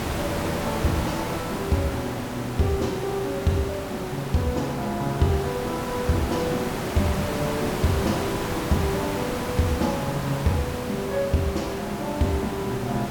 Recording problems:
background hiss; slope -5 dB per octave, SNR 4 dB

